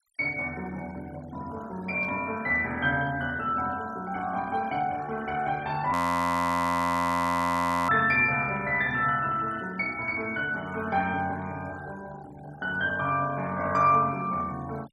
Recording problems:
noise reduction artefacts; signal-to-artefact ratio 21 dB
burst of static; at 2 s; peak -21 dB vs average level
frozen audio; at 6 s for 2 s

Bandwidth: 12.5 kHz